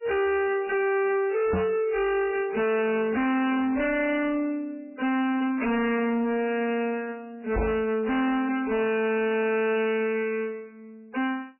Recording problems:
lossy compression; MP3, log-spectral distance 4 dB, nothing above 2.4 kHz
distorted audio; soft clipping, signal-to-distortion ratio 5 dB
microphone thump; at 1.5 s and at 7.5 s; peak +5 dB vs average level

